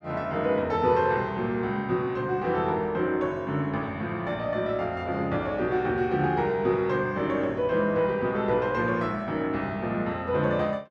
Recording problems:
none

